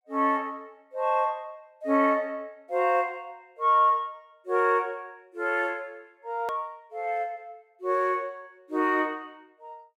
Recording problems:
hard cut with a click; at 6.5 s

